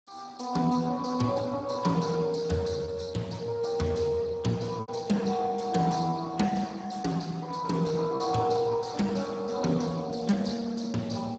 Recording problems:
lossy codec; Speex, log-spectral distance 5 dB, nothing above 7.3 kHz
lost packets; 2% of the sound replaced, filled with repeated pitch periods

